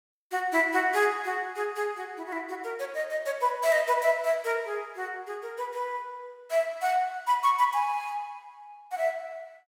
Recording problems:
none

